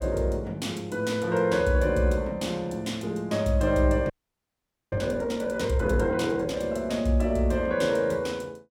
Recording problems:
frozen audio; at 4 s for 1 s

